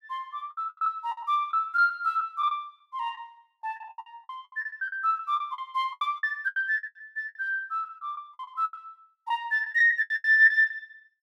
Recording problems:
packet loss; 17% of the sound replaced, filled with the last packet

